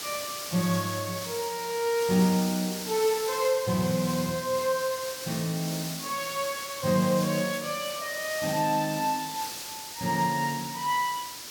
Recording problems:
hiss; slope +1 dB per octave, SNR 7 dB

